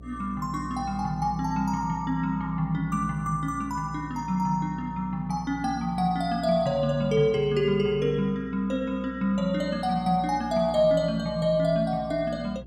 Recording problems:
electrical hum; 60 Hz, harmonics up to 660 Hz, SNR 18 dB

